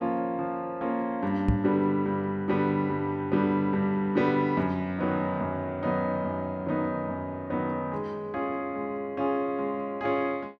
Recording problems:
microphone thump; at 1.5 s; peak +7 dB vs average level

